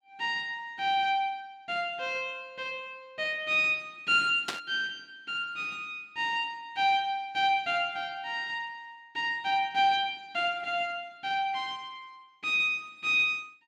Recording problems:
burst of static; at 4.5 s; peak +1 dB vs average level

